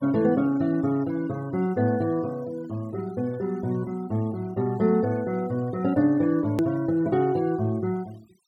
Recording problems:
denoising artefacts; signal-to-artefact ratio 24 dB
hard cut with a click; at 6.5 s

